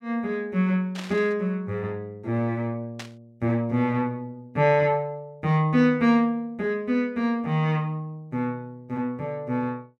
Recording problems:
static burst; at 1 s and at 3 s; peak -7 dB vs average level

